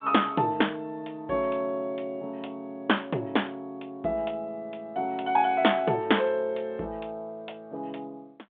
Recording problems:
phone line; 240 Hz to 3.5 kHz, G.726

